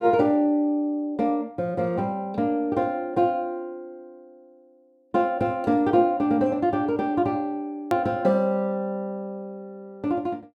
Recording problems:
edit click; at 8 s

